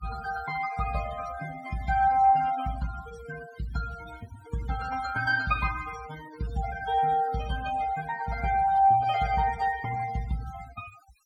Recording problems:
denoising artefacts; signal-to-artefact ratio 16 dB

